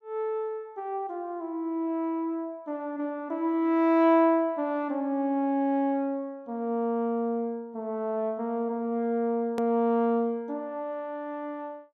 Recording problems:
hard cut with a click; at 9.5 s

